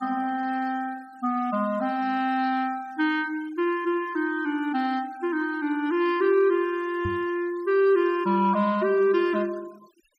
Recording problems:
denoising artefacts; signal-to-artefact ratio 24 dB
knock on the microphone; at 7 s; peak -3 dB vs average level

